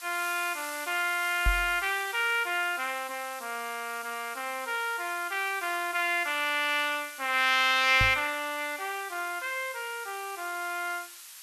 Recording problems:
hiss; SNR 14 dB
microphone bump; at 1.5 s and at 8 s; peak +3 dB vs average level

